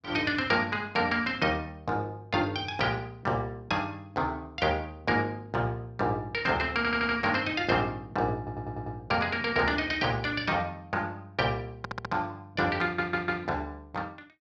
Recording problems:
audio stuttering; 4 times, first at 7 s

